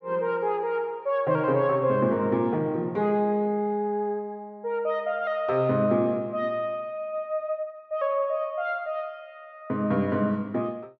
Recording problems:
none

